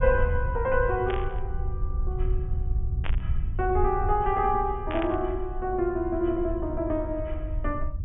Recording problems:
low-pass filter; nothing above 3.4 kHz
low-frequency rumble; below 78 Hz, SNR 5 dB
static burst; at 1 s, at 3 s and at 5 s; peak -4 dB vs average level

